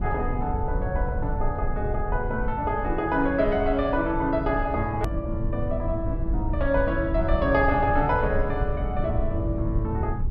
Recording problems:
treble cut off; nothing above 5.5 kHz
rumble; below 92 Hz, SNR 4 dB
hard cut with a click; at 5 s

